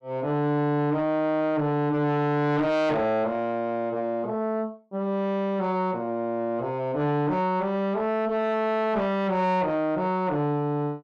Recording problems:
distortion; soft clipping, signal-to-distortion ratio 12 dB

